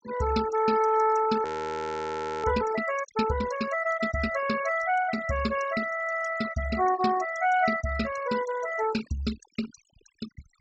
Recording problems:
treble missing; nothing above 8 kHz
noise reduction artefacts; signal-to-artefact ratio 13 dB
frozen audio; at 1.5 s for 1 s

